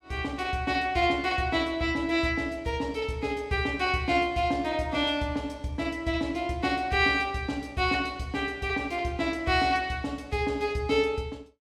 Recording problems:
none

